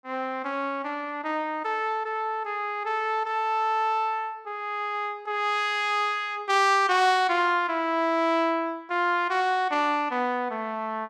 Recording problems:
none

